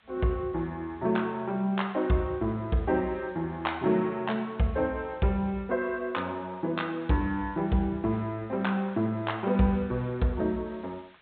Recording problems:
treble missing; nothing above 4 kHz
background hiss; SNR 29 dB

